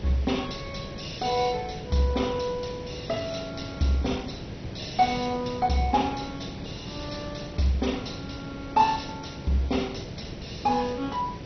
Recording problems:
lossy compression; MP2, log-spectral distance 8 dB, nothing above 6 kHz
hiss; SNR 10 dB

